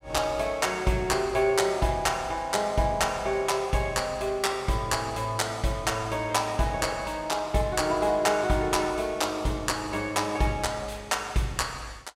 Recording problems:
none

